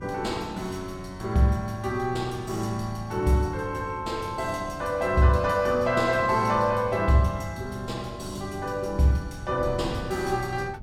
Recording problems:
wind noise; below 170 Hz, SNR 16 dB

